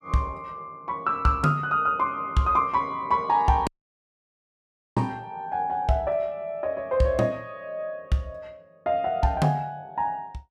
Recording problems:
audio cutting out; at 3.5 s for 1.5 s

